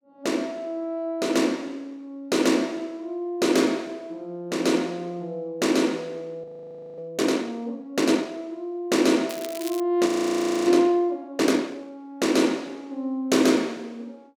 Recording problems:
frozen audio; at 6.5 s for 0.5 s and at 10 s for 0.5 s
crackle; at 9.5 s; loose cable, SNR 14 dB

